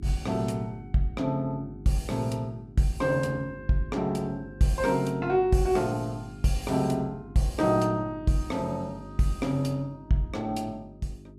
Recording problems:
hum; 50 Hz, harmonics up to 400 Hz, SNR 17 dB

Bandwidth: 15 kHz